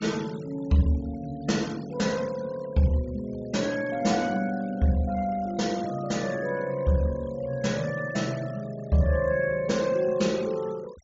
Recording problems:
treble missing; nothing above 8 kHz
noise reduction artefacts; signal-to-artefact ratio 21 dB

